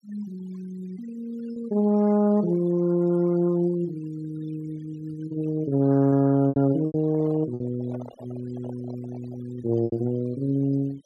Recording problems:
noise reduction artefacts; signal-to-artefact ratio 23 dB
lost packets; 4% of the sound replaced, filled with repeated pitch periods
handling noise; from 7 to 9.5 s; peak -11 dB vs average level

